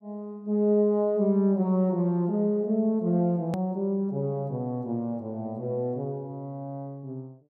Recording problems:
click at an edit; at 3.5 s

